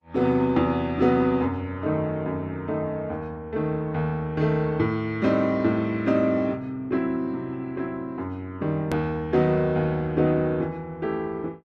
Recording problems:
lossy codec; Opus, log-spectral distance 2 dB, nothing above 13.1 kHz
hard cut with a click; at 9 s

